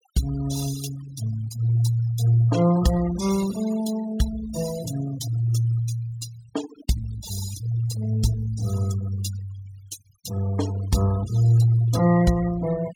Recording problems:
noise reduction artefacts; signal-to-artefact ratio 15 dB

